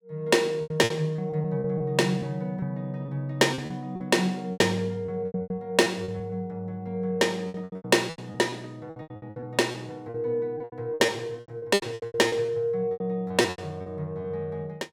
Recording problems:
lost packets; 16% of the sound replaced, filled with repeated pitch periods

